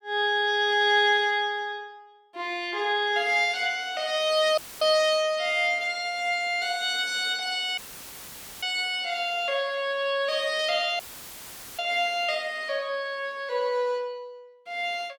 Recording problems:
audio cutting out; at 4.5 s, at 8 s for 1 s and at 11 s for 1 s; filled with static

